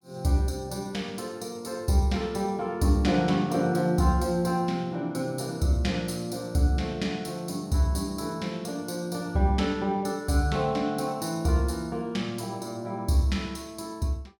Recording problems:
none

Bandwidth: 17.5 kHz